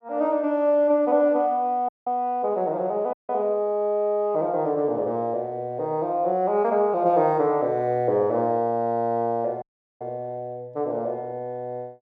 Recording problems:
dropout; at 2 s, at 3 s and at 9.5 s

